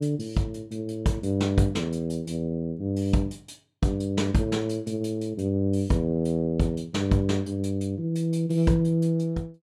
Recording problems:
none

